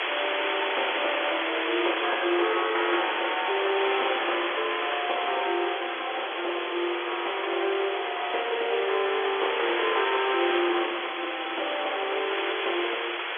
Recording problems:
phone line; 300 Hz to 3.4 kHz, G.711
background hiss; SNR 1 dB

